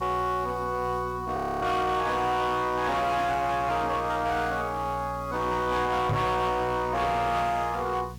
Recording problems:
distortion; hard clipping, uneven, signal-to-distortion ratio 10 dB
hum; 60 Hz, harmonics up to 420 Hz, SNR 15 dB
hiss; slope +1 dB per octave, SNR 27 dB
frozen audio; at 1.5 s
knock on the microphone; at 6 s; peak +2 dB vs average level

